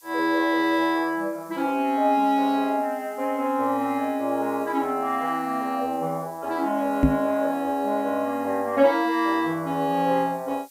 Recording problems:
hiss; slope +5 dB per octave, SNR 26 dB
knock on the microphone; at 7 s; peak +8 dB vs average level

